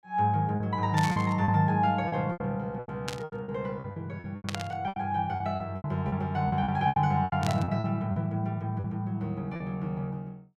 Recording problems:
lost packets; 13% of the sound replaced, filled with repeated pitch periods
static burst; 4 times, first at 1 s; peak -1 dB vs average level

